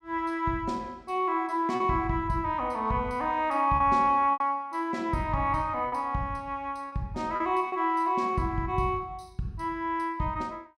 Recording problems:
lost packets; 3% of the sound replaced, filled with repeated pitch periods

